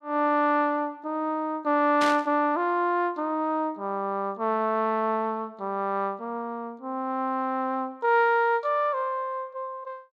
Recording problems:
burst of static; at 2 s; peak -1 dB vs average level

